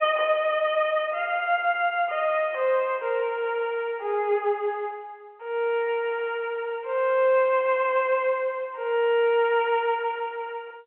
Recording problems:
phone line; 320 Hz to 3.1 kHz, G.711

